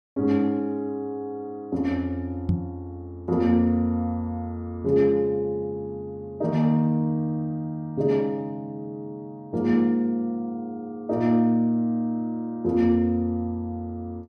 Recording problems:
knock on the microphone; at 2.5 s; peak +5 dB vs average level

